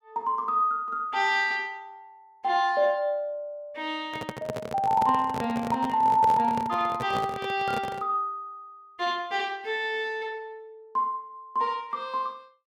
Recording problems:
microphone handling noise; from 4 to 8 s; peak -1 dB vs average level

